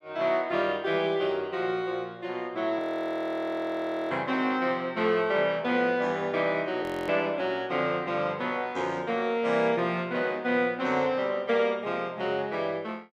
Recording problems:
audio freezing; at 3 s for 1.5 s and at 7 s

